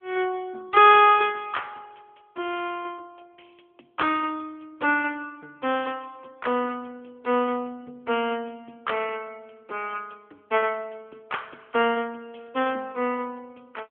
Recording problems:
phone line; 280 Hz to 3.4 kHz, AMR-NB

